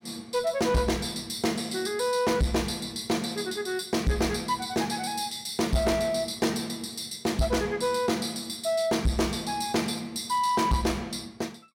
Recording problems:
distortion; soft clipping, signal-to-distortion ratio 10 dB

